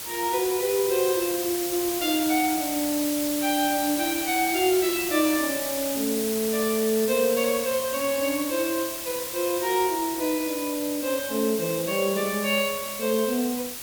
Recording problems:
hiss; slope 0 dB per octave, SNR 4 dB

